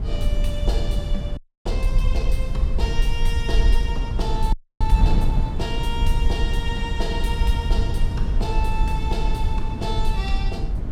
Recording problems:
rumble; below 50 Hz, SNR -5 dB
wind noise; below 190 Hz, SNR 0 dB
frozen audio; at 1.5 s and at 4.5 s

